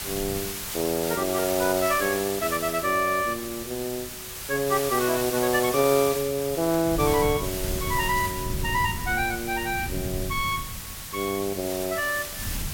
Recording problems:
background hiss; slope +1 dB per octave, SNR 6 dB
wind on the microphone; below 150 Hz, SNR 11 dB

